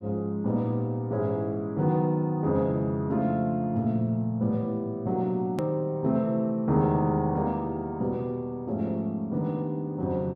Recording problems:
click at an edit; at 5.5 s

